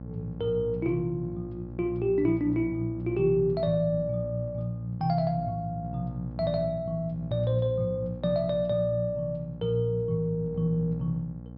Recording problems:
treble cut off; nothing above 5.4 kHz
hum; 60 Hz, harmonics up to 840 Hz, SNR 11 dB

